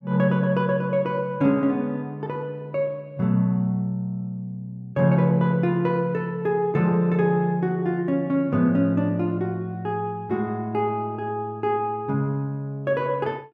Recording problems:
none

